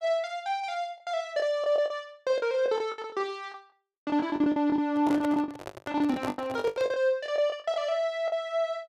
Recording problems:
packet loss; 14% of the sound replaced, filled with the last packet
handling noise; from 5 to 7 s; peak -2 dB vs average level

